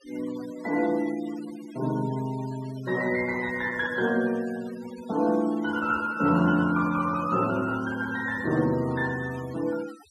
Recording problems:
denoising artefacts; signal-to-artefact ratio 18 dB

